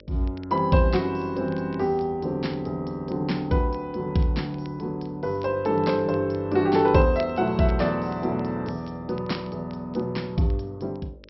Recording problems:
low-pass filter; nothing above 5.5 kHz
hum; 50 Hz, harmonics up to 600 Hz, SNR 27 dB
crackle; vinyl, SNR 29 dB

